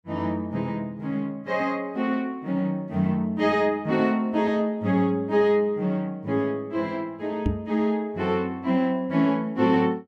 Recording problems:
microphone thump; at 7.5 s; peak +4 dB vs average level

